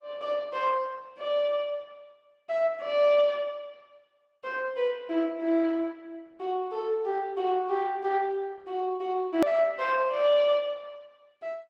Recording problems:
codec artefacts; Opus, log-spectral distance 2 dB, nothing above 16.6 kHz
edit click; at 9.5 s

